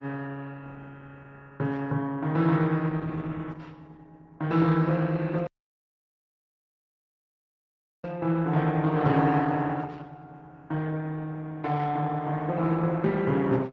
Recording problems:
low-pass filter; nothing above 8 kHz
codec artefacts; Opus, log-spectral distance 3 dB
dropout; at 5.5 s for 2.5 s

